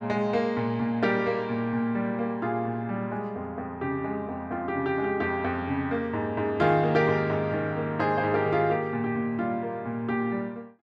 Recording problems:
none

